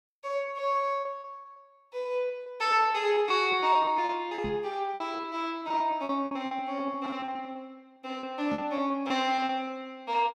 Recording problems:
packet loss; 15% of the sound replaced, filled with repeated pitch periods
microphone bump; at 4.5 s and at 8.5 s; peak -3 dB vs average level

